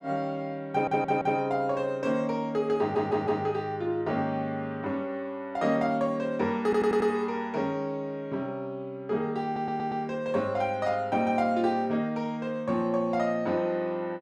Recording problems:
stutter; 4 times, first at 0.5 s

